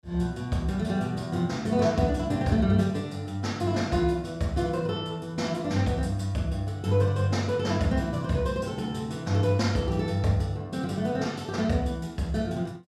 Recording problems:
none

